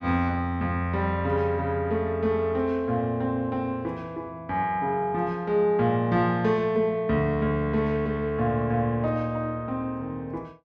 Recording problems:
none

